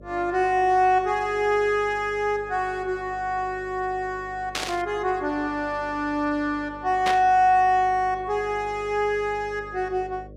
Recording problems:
electrical hum; 50 Hz, harmonics up to 600 Hz, SNR 21 dB
static burst; at 4.5 s and at 7 s; peak 0 dB vs average level

